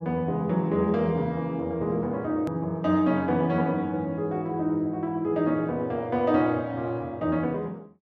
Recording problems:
edit click; at 2.5 s

